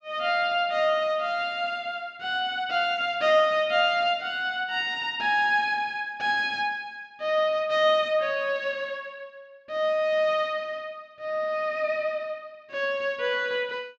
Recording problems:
none

